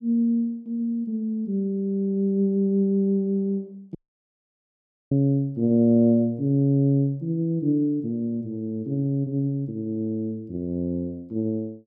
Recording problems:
dropout; at 4 s for 1 s

